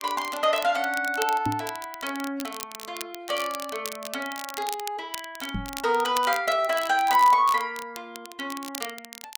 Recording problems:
crackling; vinyl, SNR 12 dB
microphone thump; at 1.5 s and at 5.5 s; peak 0 dB vs average level

